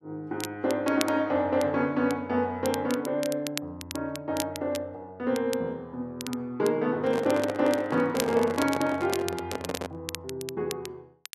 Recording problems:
crackle; vinyl, SNR 12 dB
microphone handling noise; from 7 to 10 s; peak +1 dB vs average level

